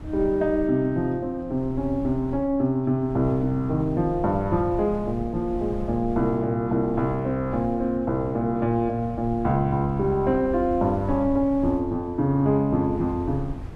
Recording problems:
wind noise; below 120 Hz, SNR 15 dB

